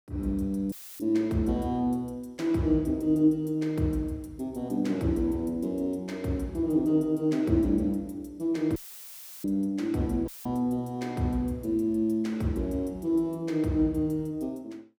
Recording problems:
audio cutting out; at 0.5 s, at 9 s for 0.5 s and at 10 s; filled with static

